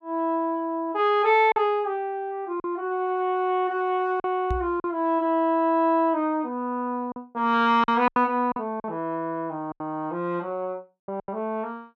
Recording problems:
lost packets; 5% of the sound replaced, filled with silence
knock on the microphone; at 4.5 s; peak -1 dB vs average level

